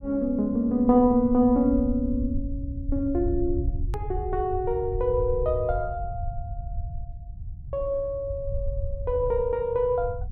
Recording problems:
low-frequency rumble; below 86 Hz, SNR 9 dB
hard cut with a click; at 4 s

